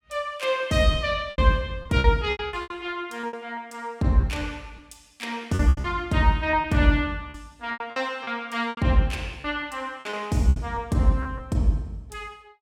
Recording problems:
packet loss; 11% of the sound replaced, filled with repeated pitch periods

